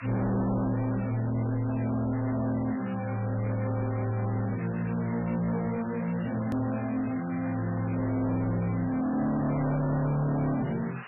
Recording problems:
lossy compression; MP3, log-spectral distance 7 dB, nothing above 2.3 kHz
distortion; soft clipping, signal-to-distortion ratio 7 dB
background hiss; SNR 14 dB
edit click; at 6.5 s

